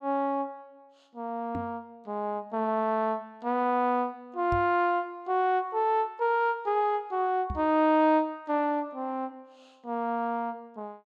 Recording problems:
microphone thump; at 1.5 s, at 4.5 s and at 7.5 s; peak -3 dB vs average level

